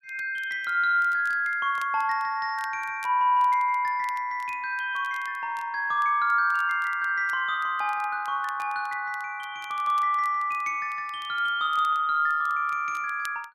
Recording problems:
crackling; vinyl, SNR 28 dB

